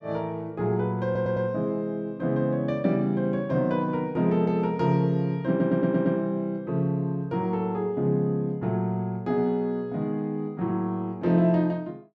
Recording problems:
stutter; at 1 s and at 5.5 s

